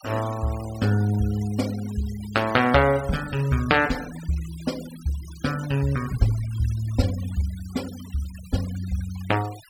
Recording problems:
denoising artefacts; signal-to-artefact ratio 17 dB

